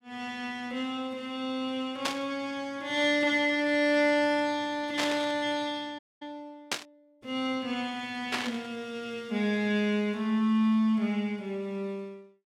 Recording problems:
static burst; 4 times, first at 2 s; peak +4 dB vs average level
audio cutting out; at 6 s

